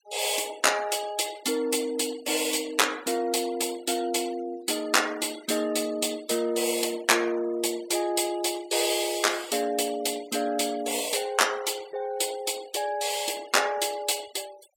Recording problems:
noise reduction artefacts; signal-to-artefact ratio 20 dB

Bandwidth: 17 kHz